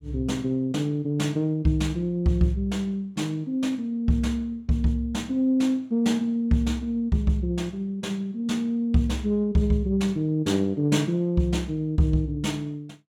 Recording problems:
none

